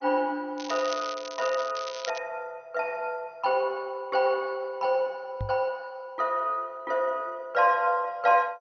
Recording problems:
lossy codec; MP2, log-spectral distance 4 dB, nothing above 5.8 kHz
crackling; from 0.5 to 2 s; loose cable, SNR 12 dB
microphone bump; at 5.5 s; peak -2 dB vs average level

